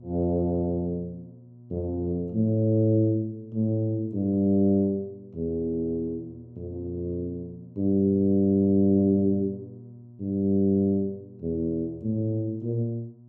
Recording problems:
electrical hum; 60 Hz, harmonics up to 600 Hz, SNR 22 dB

